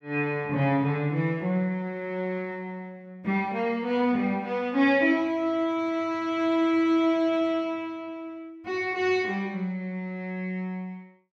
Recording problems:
none

